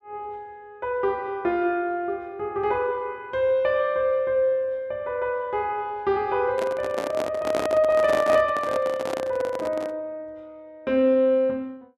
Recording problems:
microphone handling noise; from 6.5 to 10 s; peak 0 dB vs average level

